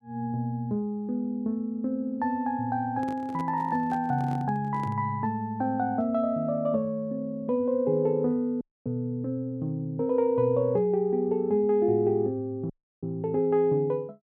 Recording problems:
handling noise; from 3 to 5 s; peak -9 dB vs average level
dropout; at 8.5 s and at 13 s

